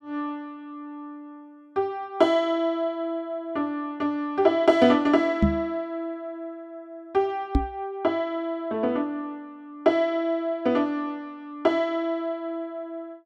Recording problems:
microphone thump; at 5.5 s and at 7.5 s; peak +8 dB vs average level

